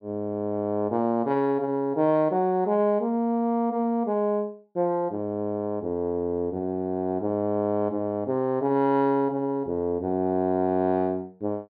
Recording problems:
treble missing; nothing above 5.5 kHz

